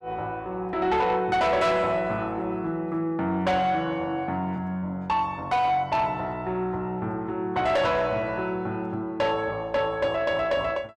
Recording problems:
distortion; soft clipping, signal-to-distortion ratio 11 dB

